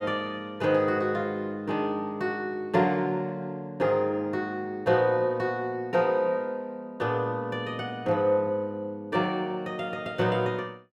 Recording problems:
none

